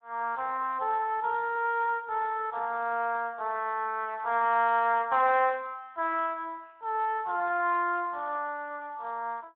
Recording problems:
telephone audio; 280 Hz to 3.5 kHz, Speex

